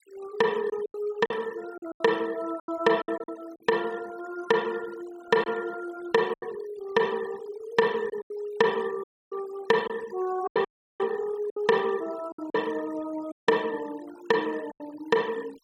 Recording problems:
noise reduction artefacts; signal-to-artefact ratio 19 dB
lost packets; 7% of the sound replaced, filled with silence
dropout; at 9 s, at 11 s and at 13 s

